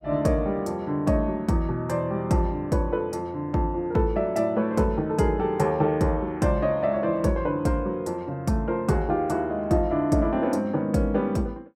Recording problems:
none

